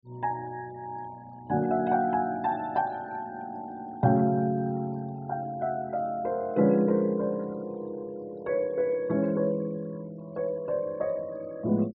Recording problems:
treble cut off; nothing above 5.5 kHz
denoising artefacts; signal-to-artefact ratio 26 dB

